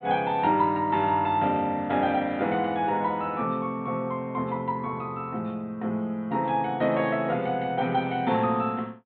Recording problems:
treble missing; nothing above 4 kHz

